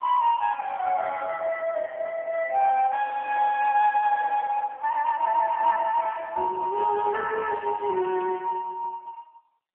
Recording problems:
telephone audio; 320 Hz to 2.8 kHz, AMR-NB

